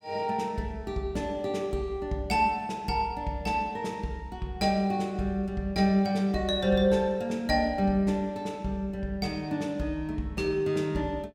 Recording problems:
none

